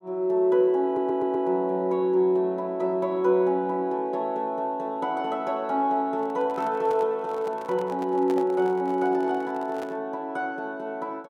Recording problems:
stutter; at 1 s
handling noise; from 6 to 10 s; peak -8 dB vs average level

